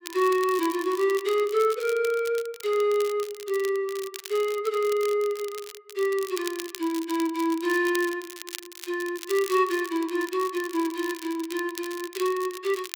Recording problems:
crackling; vinyl, SNR 14 dB

